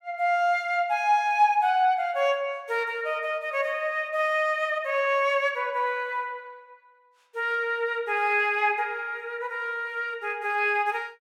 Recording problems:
none

